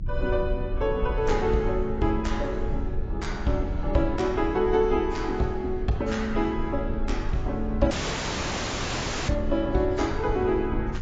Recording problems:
codec artefacts; AAC, log-spectral distance 4 dB, nothing above 7.3 kHz
rumble; below 70 Hz, SNR 7 dB
audio cutting out; at 8 s for 1.5 s

